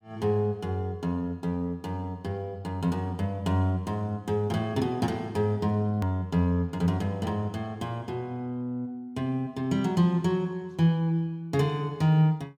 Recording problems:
hard cut with a click; at 6 s

